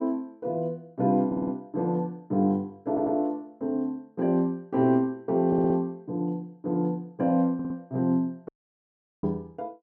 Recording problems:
audio stuttering; 4 times, first at 1.5 s
audio cutting out; at 8.5 s for 0.5 s

